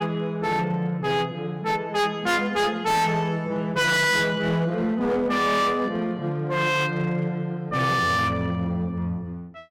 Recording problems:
distortion; hard clipping, signal-to-distortion ratio 7 dB

